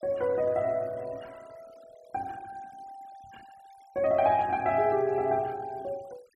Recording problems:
denoising artefacts; signal-to-artefact ratio 26 dB

